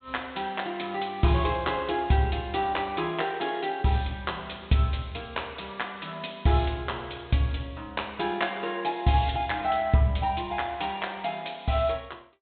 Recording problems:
low-pass filter; nothing above 4 kHz

